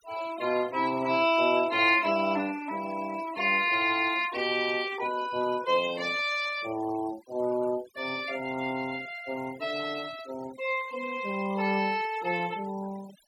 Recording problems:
noise reduction artefacts; signal-to-artefact ratio 17 dB

